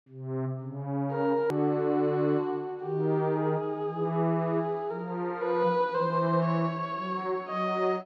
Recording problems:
hard cut with a click; at 1.5 s

